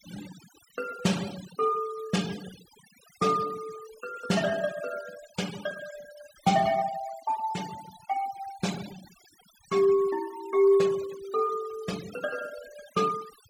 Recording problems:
denoising artefacts; signal-to-artefact ratio 15 dB

